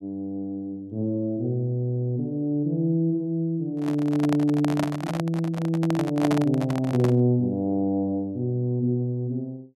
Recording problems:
stutter; at 2 s
microphone handling noise; from 3.5 to 7 s; peak +2 dB vs average level

